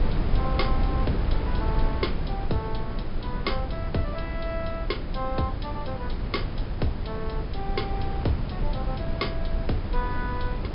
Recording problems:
treble missing; nothing above 5.5 kHz
electrical hum; 50 Hz, harmonics up to 1.3 kHz, SNR 14 dB
hiss; SNR 22 dB
wind noise; below 120 Hz, SNR -2 dB

